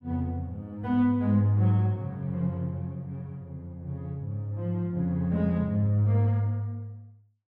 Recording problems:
none

